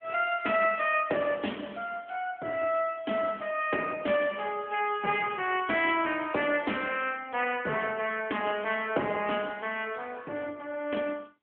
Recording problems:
telephone audio; 240 Hz to 3.3 kHz, AMR-NB

